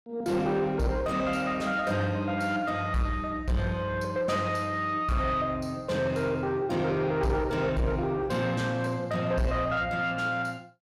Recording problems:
distortion; soft clipping, signal-to-distortion ratio 10 dB

